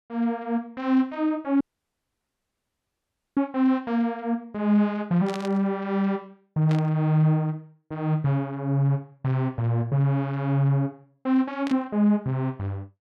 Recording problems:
dropout; at 1.5 s for 2 s
static burst; at 5.5 s, at 6.5 s and at 12 s; peak -8 dB vs average level

